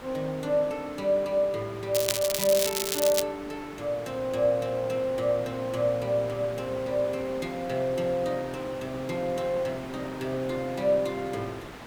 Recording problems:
background hiss; SNR 14 dB
crackling; from 2 to 3 s; loose cable, SNR 1 dB

